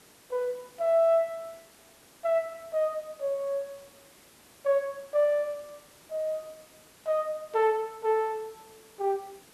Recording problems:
hiss; slope -3 dB per octave, SNR 25 dB

